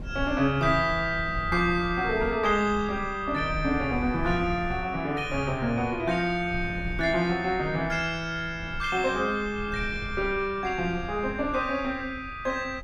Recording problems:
wind on the microphone; below 110 Hz, SNR 13 dB

